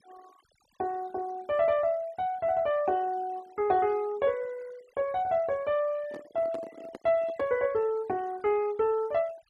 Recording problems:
denoising artefacts; signal-to-artefact ratio 25 dB
handling noise; from 6 to 7.5 s; peak -8 dB vs average level

